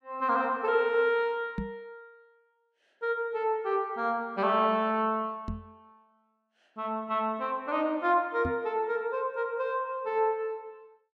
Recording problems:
knock on the microphone; at 1.5 s, at 5.5 s and at 8.5 s; peak -1 dB vs average level

